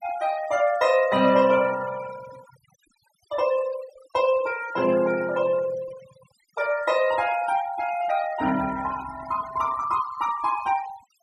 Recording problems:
denoising artefacts; signal-to-artefact ratio 16 dB

